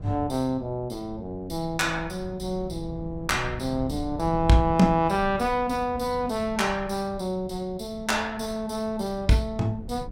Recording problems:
wind noise; below 160 Hz, SNR 14 dB

